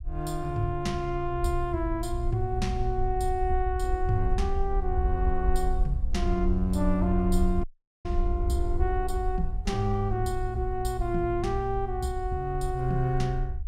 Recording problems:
low-frequency rumble; below 60 Hz, SNR 3 dB
audio cutting out; at 7.5 s

